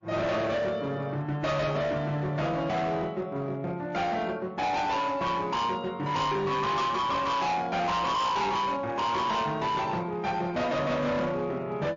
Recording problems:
codec artefacts; MP3, log-spectral distance 2 dB, nothing above 6.5 kHz
distorted audio; hard clipping, signal-to-distortion ratio 7 dB

